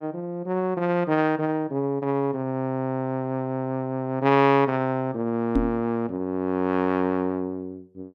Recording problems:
microphone bump; at 5.5 s; peak +6 dB vs average level

